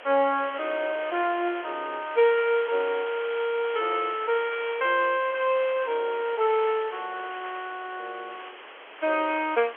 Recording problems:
telephone audio; 320 Hz to 3.4 kHz, G.711
background hiss; SNR 15 dB
wind on the microphone; below 1.1 kHz, SNR 24 dB

